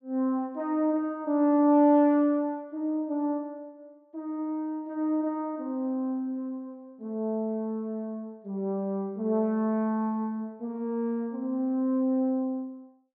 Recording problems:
low-pass filter; nothing above 8 kHz

